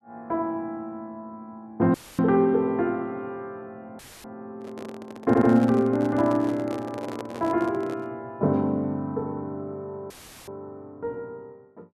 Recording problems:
audio cutting out; at 2 s, at 4 s and at 10 s; filled with static
handling noise; from 4.5 to 8 s; peak -5 dB vs average level
stutter; at 5.5 s

